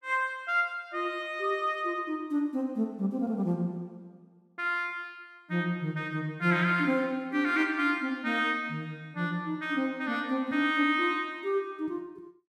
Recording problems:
none

